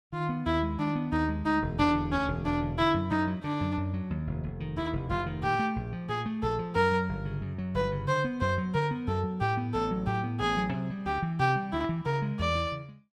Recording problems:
none

